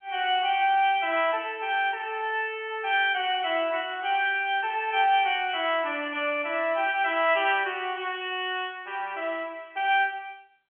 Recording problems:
phone line; 220 Hz to 3.2 kHz, G.711

